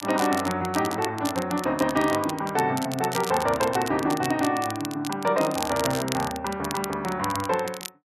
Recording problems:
crackle; vinyl, SNR 10 dB

